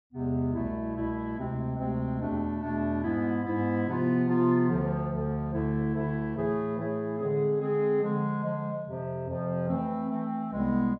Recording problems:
none

